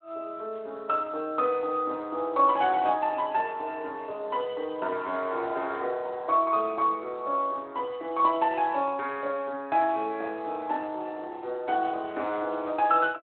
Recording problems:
phone line; 280 Hz to 3.6 kHz, Speex

